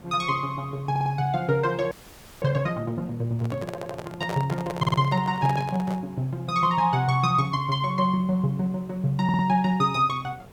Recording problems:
hiss; slope -7 dB per octave, SNR 24 dB
stutter; 4 times, first at 1 s
audio freezing; at 2 s for 0.5 s
handling noise; from 3.5 to 6 s; peak -4 dB vs average level

